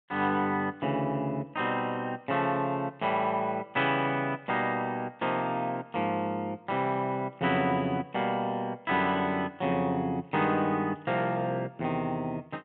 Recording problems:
treble cut off; nothing above 4 kHz

